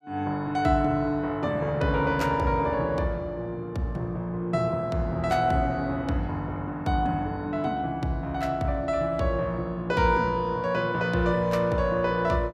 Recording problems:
none

